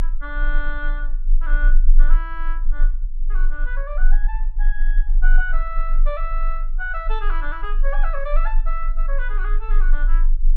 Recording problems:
rumble; below 28 Hz, strongest tone 22 Hz, SNR -8 dB

